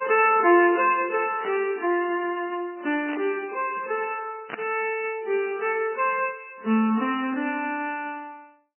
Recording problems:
codec artefacts; MP3, log-spectral distance 4 dB, nothing above 2.7 kHz
burst of static; at 1.5 s, at 3 s and at 4.5 s; peak -3 dB vs average level

